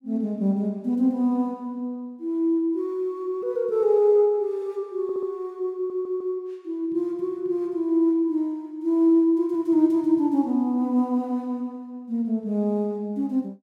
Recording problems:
stutter; at 5 s and at 6 s

